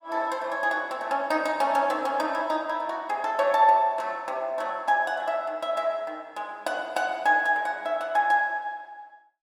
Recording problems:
none

